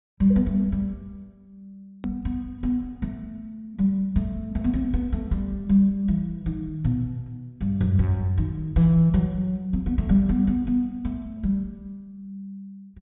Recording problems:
low-pass filter; nothing above 4 kHz
hard cut with a click; at 2 s

